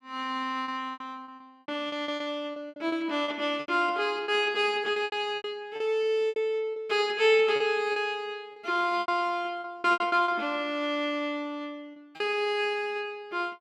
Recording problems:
lost packets; 12% of the sound replaced, filled with repeated pitch periods

